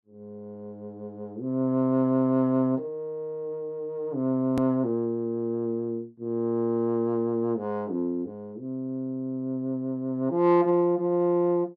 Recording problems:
hard cut with a click; at 4.5 s

